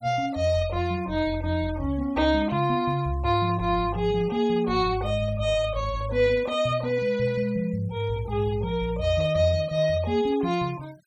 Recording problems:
denoising artefacts; signal-to-artefact ratio 25 dB

